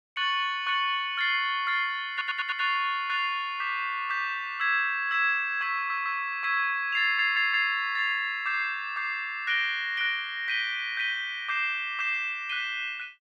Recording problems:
stutter; at 2 s, at 5.5 s and at 7 s

